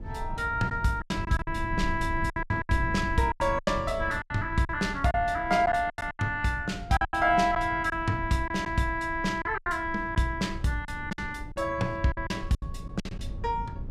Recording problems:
low-frequency rumble; below 120 Hz, SNR 11 dB
packet loss; 11% of the sound replaced, filled with silence

